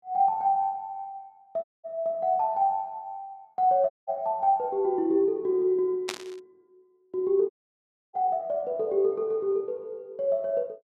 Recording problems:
audio cutting out; at 1.5 s, at 4 s and at 7.5 s for 0.5 s
burst of static; at 6 s; peak -1 dB vs average level

